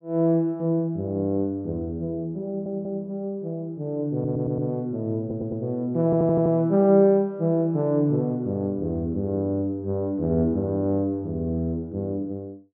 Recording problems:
stutter; 4 times, first at 2.5 s

